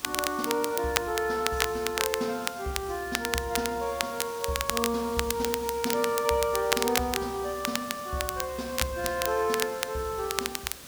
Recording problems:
hiss; slope -2 dB per octave, SNR 14 dB
crackle; vinyl, SNR 2 dB

